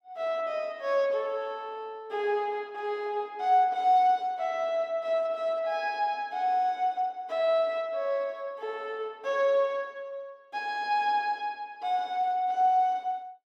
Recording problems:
none

